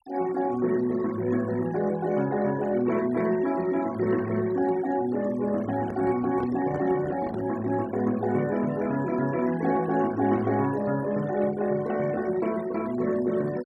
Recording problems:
noise reduction artefacts; signal-to-artefact ratio 18 dB
microphone handling noise; from 5.5 to 7.5 s; peak -6 dB vs average level

